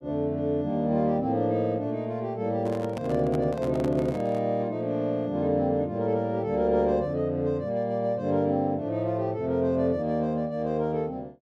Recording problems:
handling noise; from 2.5 to 4.5 s; peak -7 dB vs average level

